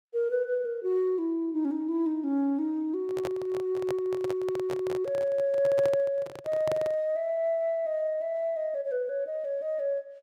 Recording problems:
microphone handling noise; from 3 to 7 s; peak -2 dB vs average level

